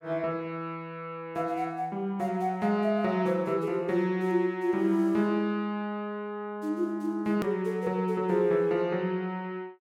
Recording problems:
click at an edit; at 7.5 s

